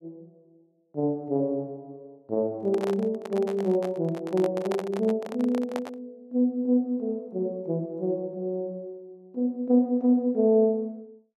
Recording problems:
microphone handling noise; from 2.5 to 6 s; peak -3 dB vs average level

